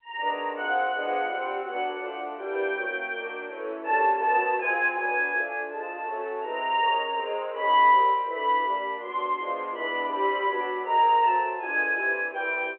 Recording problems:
telephone audio; 320 Hz to 3.1 kHz, G.711

